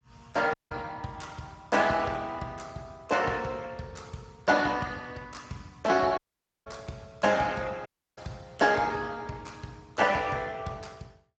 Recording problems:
codec artefacts; Speex, log-spectral distance 5 dB, nothing above 7.3 kHz
dropout; at 0.5 s, at 6 s and at 8 s

